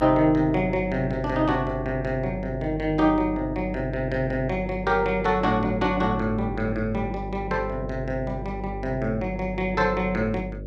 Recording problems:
hum; 50 Hz, harmonics up to 600 Hz, SNR 10 dB

